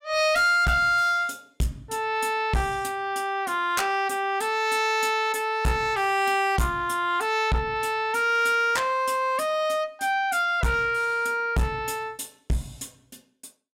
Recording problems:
distorted audio; hard clipping, uneven, signal-to-distortion ratio 11 dB

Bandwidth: 16 kHz